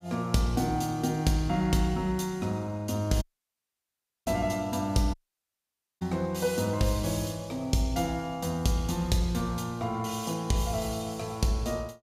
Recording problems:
dropout; at 3 s for 1 s and at 5 s for 1 s

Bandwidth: 15.5 kHz